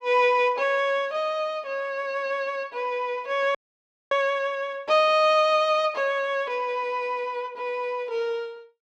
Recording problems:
dropout; at 3.5 s for 0.5 s

